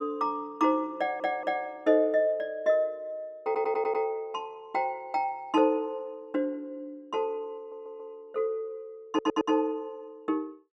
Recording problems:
stutter; 4 times, first at 1 s

